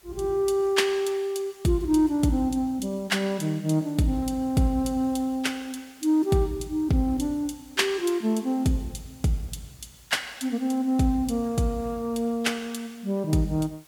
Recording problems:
background hiss; slope -1 dB per octave, SNR 28 dB

